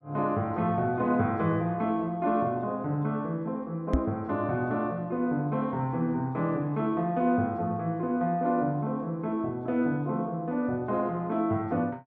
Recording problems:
knock on the microphone; at 4 s; peak +7 dB vs average level

